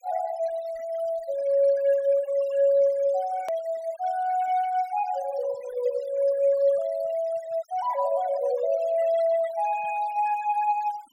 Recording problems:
denoising artefacts; signal-to-artefact ratio 20 dB
click at an edit; at 3.5 s

